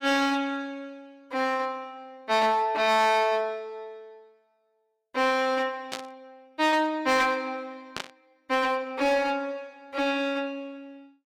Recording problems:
distorted audio; hard clipping, uneven, signal-to-distortion ratio 11 dB
static burst; at 6 s and at 8 s; peak -3 dB vs average level

